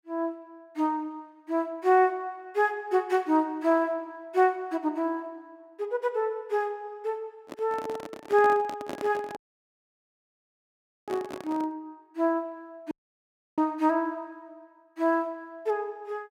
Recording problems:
handling noise; from 7.5 to 12 s; peak -4 dB vs average level
dropout; at 9.5 s for 1.5 s and at 13 s for 0.5 s

